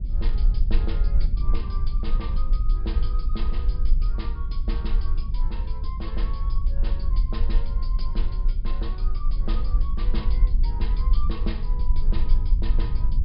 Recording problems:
treble cut off; nothing above 5.5 kHz
rumble; below 44 Hz, strongest tone 20 Hz, SNR -13 dB

